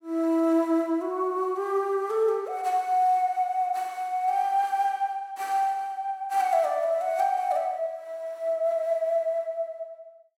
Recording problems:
none

